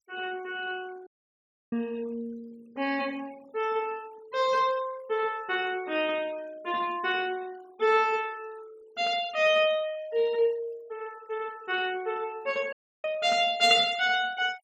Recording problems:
noise reduction artefacts; signal-to-artefact ratio 24 dB
dropout; at 1 s for 0.5 s and at 13 s

